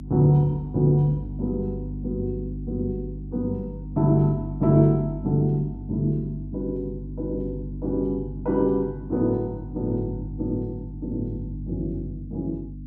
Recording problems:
mains hum; 50 Hz, harmonics up to 300 Hz, SNR 9 dB

